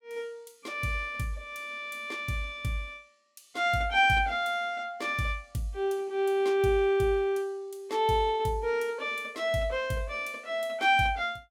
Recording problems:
none

